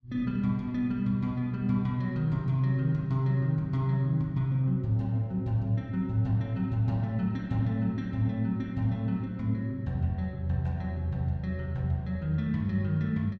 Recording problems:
none

